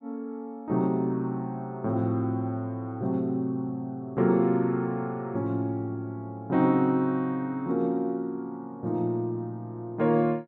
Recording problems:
none

